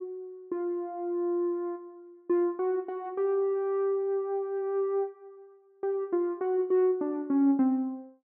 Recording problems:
none

